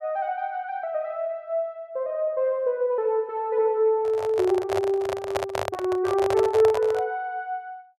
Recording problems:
handling noise; from 4 to 7 s; peak +2 dB vs average level

